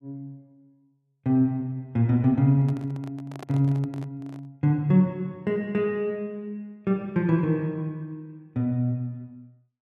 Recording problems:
microphone handling noise; from 2.5 to 4.5 s; peak -10 dB vs average level

